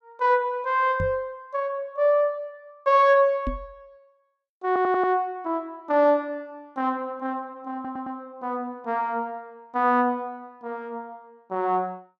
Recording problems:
knock on the microphone; at 1 s and at 3.5 s; peak -2 dB vs average level
audio stuttering; at 4.5 s and at 7.5 s

